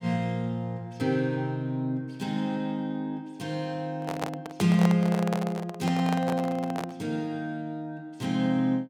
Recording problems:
handling noise; from 4 to 7 s; peak +2 dB vs average level

